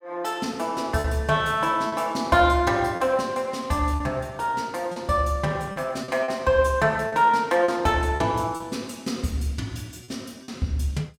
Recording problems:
lost packets; 5% of the sound replaced, filled with repeated pitch periods

